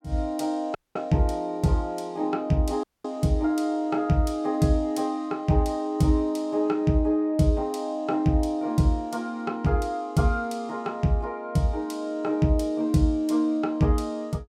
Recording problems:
audio cutting out; at 1 s and at 3 s

